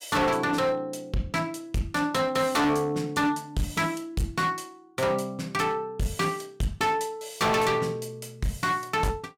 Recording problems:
distorted audio; hard clipping, signal-to-distortion ratio 8 dB

